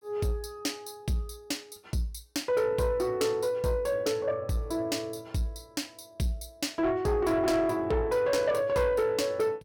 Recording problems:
distorted audio; soft clipping, signal-to-distortion ratio 12 dB

